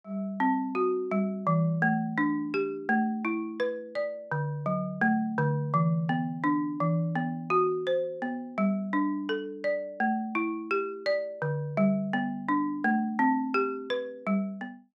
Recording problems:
none

